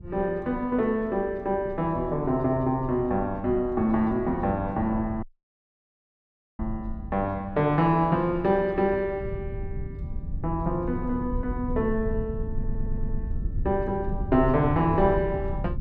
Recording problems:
low-frequency rumble; below 100 Hz, SNR 10 dB
dropout; at 5 s for 1.5 s
audio stuttering; at 13 s

